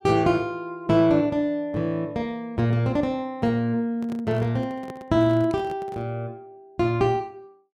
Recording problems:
microphone handling noise; from 4 to 6 s; peak -11 dB vs average level

